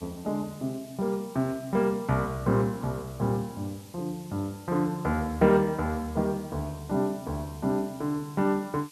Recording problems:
background hiss; slope +3 dB per octave, SNR 22 dB

